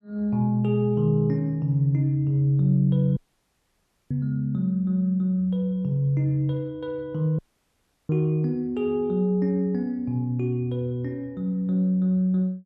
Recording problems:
audio cutting out; at 3 s for 1 s and at 7.5 s for 0.5 s

